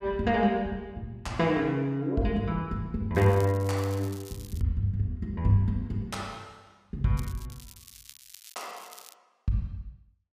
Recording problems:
crackling; from 3 to 4.5 s and from 7 to 9 s; loose cable, SNR 20 dB

